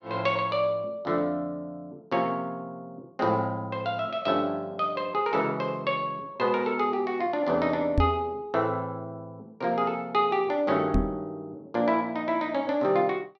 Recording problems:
microphone thump; at 8 s and at 11 s; peak +6 dB vs average level

